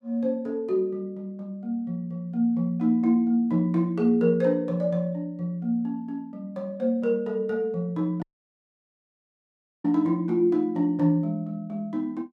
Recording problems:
dropout; at 8 s for 1.5 s

